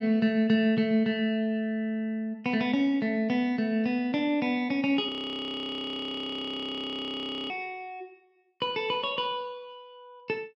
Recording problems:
frozen audio; at 5 s for 2.5 s

